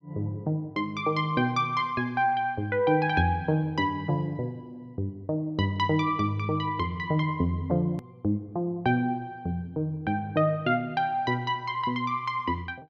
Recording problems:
edit click; at 8 s

